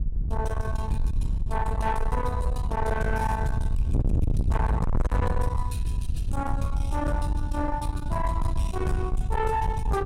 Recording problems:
distorted audio; soft clipping, signal-to-distortion ratio 7 dB
wind on the microphone; below 94 Hz, SNR -1 dB

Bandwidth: 16 kHz